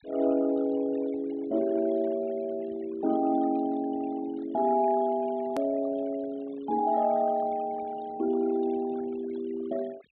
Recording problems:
low-pass filter; nothing above 4 kHz
noise reduction artefacts; signal-to-artefact ratio 22 dB
edit click; at 5.5 s

